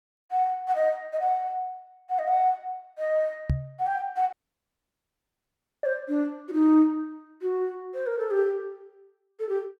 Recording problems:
microphone thump; at 3.5 s; peak +5 dB vs average level
audio cutting out; at 4.5 s for 1.5 s

